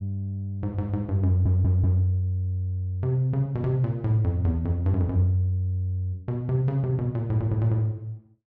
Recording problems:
audio stuttering; at 1.5 s

